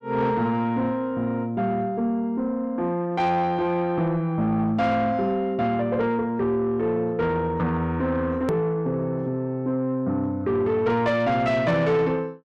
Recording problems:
distortion; soft clipping, signal-to-distortion ratio 11 dB
edit click; at 8.5 s

